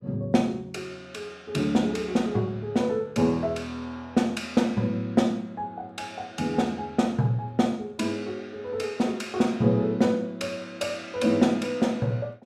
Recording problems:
none

